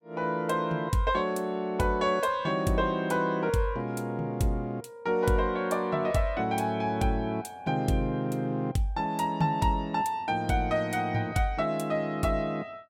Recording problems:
none

